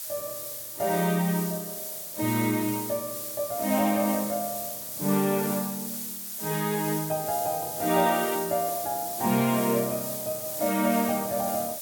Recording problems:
background hiss; SNR 5 dB

